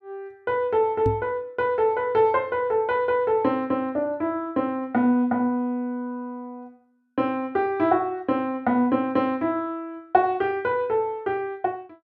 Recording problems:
microphone thump; at 1 s; peak +1 dB vs average level

